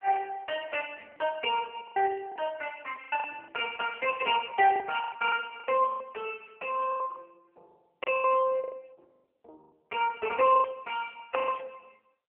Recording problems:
telephone audio; 340 Hz to 3.1 kHz, AMR-NB
lost packets; 11% of the sound replaced, filled with the last packet

